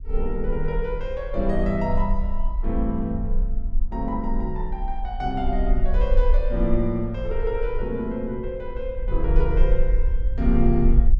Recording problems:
rumble; below 44 Hz, strongest tone 20 Hz, SNR 0 dB

